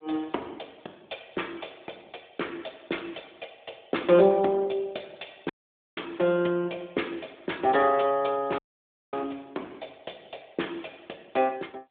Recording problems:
telephone audio; 280 Hz to 3.6 kHz, AMR-NB
dropout; at 5.5 s and at 8.5 s for 0.5 s

